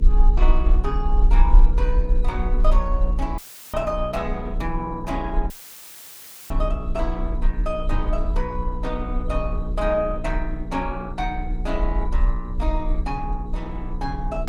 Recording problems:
codec artefacts; Opus, log-spectral distance 2 dB
hum; 60 Hz, harmonics up to 480 Hz, SNR 5 dB
rumble; below 44 Hz, strongest tone 26 Hz, SNR -4 dB
audio cutting out; at 3.5 s and at 5.5 s for 1 s; filled with static
knock on the microphone; at 8 s; peak +6 dB vs average level

